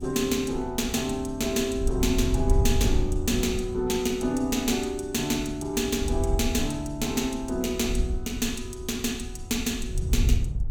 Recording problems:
wind on the microphone; below 82 Hz, SNR 5 dB

